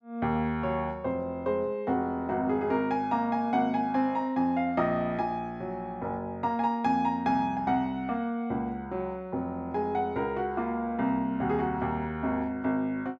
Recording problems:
none

